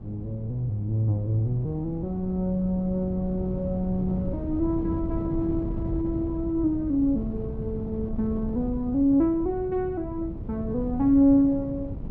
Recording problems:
wind on the microphone; below 190 Hz, SNR 9 dB

